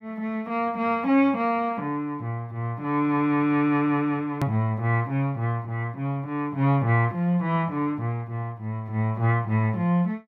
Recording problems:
hard cut with a click; at 4.5 s

